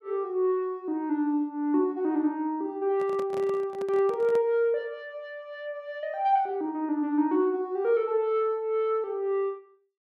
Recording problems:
handling noise; from 3 to 4.5 s; peak -9 dB vs average level

